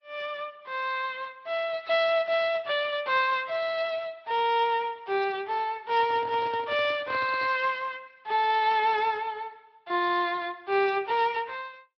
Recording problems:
treble cut off; nothing above 5.5 kHz
lossy codec; Speex, then Vorbis, log-spectral distance 4 dB
microphone handling noise; from 6 to 7.5 s; peak -10 dB vs average level

